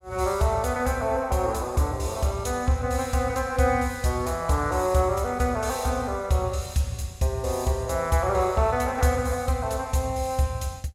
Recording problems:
none

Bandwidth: 16.5 kHz